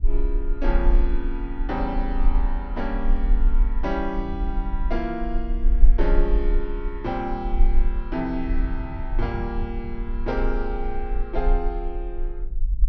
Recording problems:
treble cut off; nothing above 6.2 kHz
rumble; below 38 Hz, strongest tone 24 Hz, SNR -3 dB
wind noise; below 100 Hz, SNR 11 dB

